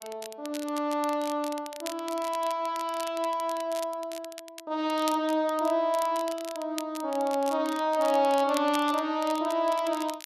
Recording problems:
crackle; vinyl, SNR 15 dB

